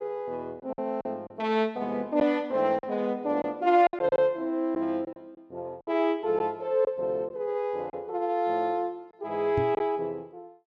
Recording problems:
packet loss; 6% of the sound replaced, filled with silence
knock on the microphone; at 9.5 s; peak 0 dB vs average level

